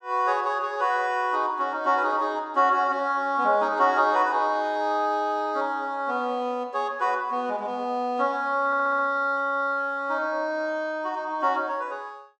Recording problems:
stutter; at 8.5 s

